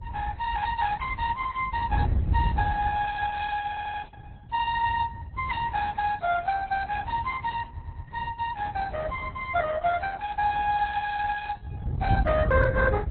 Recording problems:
codec artefacts; Opus, then AAC, log-spectral distance 3 dB, nothing above 4 kHz
wind noise; below 98 Hz, SNR 1 dB
audio stuttering; at 3.5 s and at 7.5 s

